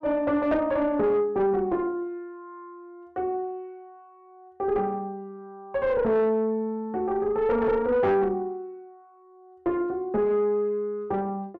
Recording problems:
distortion; soft clipping, signal-to-distortion ratio 11 dB

